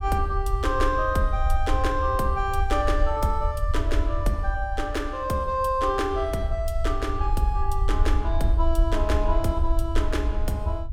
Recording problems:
rumble; below 62 Hz, SNR 1 dB

